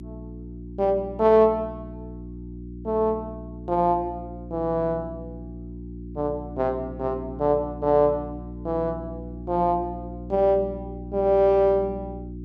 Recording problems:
hum; 60 Hz, harmonics up to 360 Hz, SNR 13 dB

